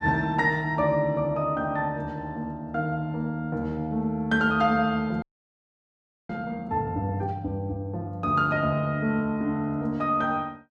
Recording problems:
frozen audio; at 5 s for 1 s

